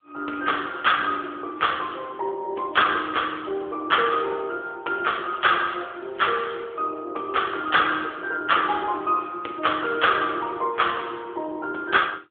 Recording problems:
telephone audio; 300 Hz to 3.5 kHz, AMR-NB

